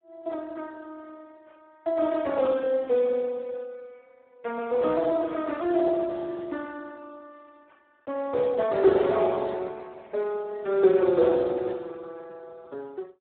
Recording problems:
phone line; 260 Hz to 3.9 kHz, Speex

